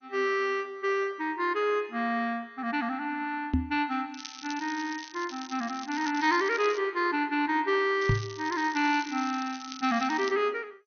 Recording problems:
lossy codec; MP2, log-spectral distance 7 dB, nothing above 6.3 kHz
microphone thump; at 3.5 s and at 8 s; peak +6 dB vs average level
crackle; from 4 to 7 s and from 8 to 10 s; loose cable, SNR 15 dB

